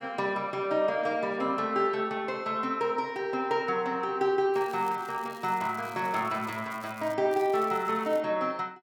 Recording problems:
crackling; from 4.5 to 7 s and at 7.5 s; loose cable, SNR 23 dB

